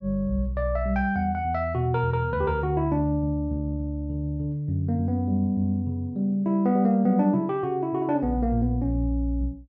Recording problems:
none

